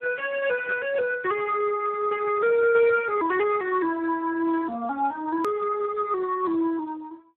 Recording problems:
telephone audio; 280 Hz to 2.9 kHz, Speex
edit click; at 5.5 s

